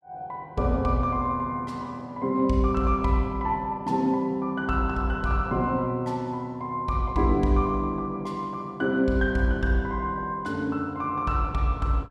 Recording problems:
none

